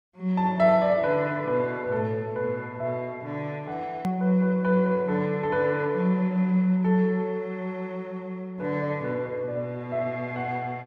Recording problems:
hard cut with a click; at 4 s

